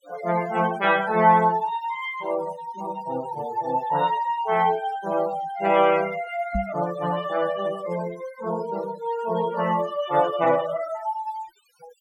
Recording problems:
noise reduction artefacts; signal-to-artefact ratio 17 dB
microphone bump; at 6.5 s; peak 0 dB vs average level

